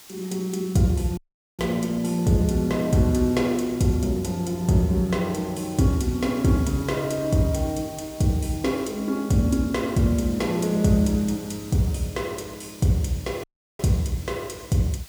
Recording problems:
background hiss; slope +1 dB per octave, SNR 20 dB
dropout; at 1 s and at 13 s

